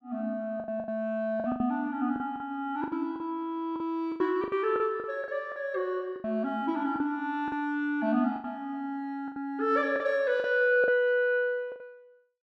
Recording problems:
packet loss; 11% of the sound replaced, filled with the last packet

